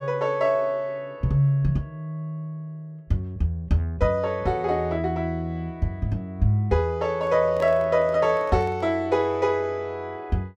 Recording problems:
handling noise; from 7 to 9 s; peak -9 dB vs average level

